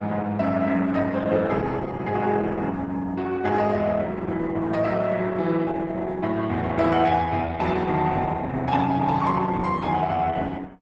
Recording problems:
lossy compression; Opus, log-spectral distance 3 dB, nothing above 8 kHz

